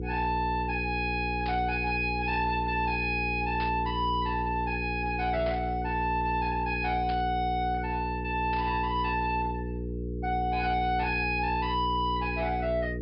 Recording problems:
treble cut off; nothing above 5.5 kHz
distorted audio; soft clipping, signal-to-distortion ratio 11 dB
electrical hum; 60 Hz, harmonics up to 480 Hz, SNR 5 dB
static burst; 5 times, first at 1.5 s; peak -8 dB vs average level

